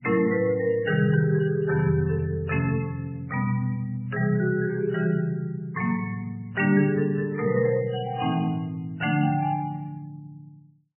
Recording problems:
lossy codec; MP3, then MP3, log-spectral distance 3 dB, nothing above 2.9 kHz

